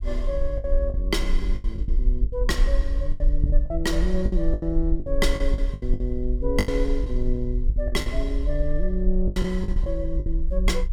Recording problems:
rumble; below 48 Hz, strongest tone 22 Hz, SNR -2 dB
lost packets; 13% of the sound replaced, filled with the last packet

